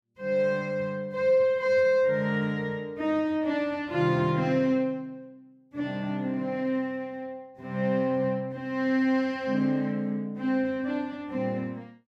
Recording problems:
none

